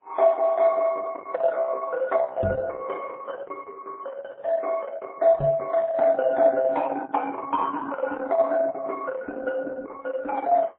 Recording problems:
lossy codec; Opus, then MP3, log-spectral distance 3 dB
knock on the microphone; at 2.5 s and at 5.5 s; peak +2 dB vs average level

